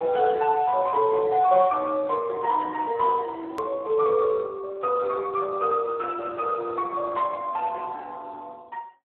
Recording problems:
phone line; 340 Hz to 2 kHz, Speex
hard cut with a click; at 3.5 s

